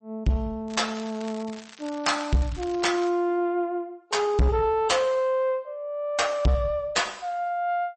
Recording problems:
lossy codec; MP3, log-spectral distance 3 dB, nothing above 8.2 kHz
distortion; soft clipping, signal-to-distortion ratio 7 dB
crackle; from 0.5 to 3 s; loose cable, SNR 20 dB

